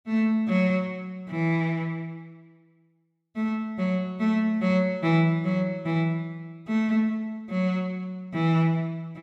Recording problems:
none

